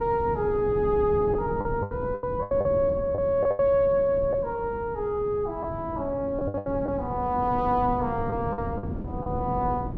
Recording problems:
wind on the microphone; below 280 Hz, SNR 9 dB
lost packets; 8% of the sound replaced, filled with the last packet

